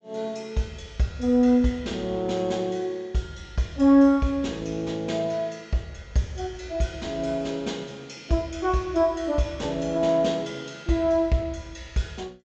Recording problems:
low-pass filter; nothing above 8 kHz

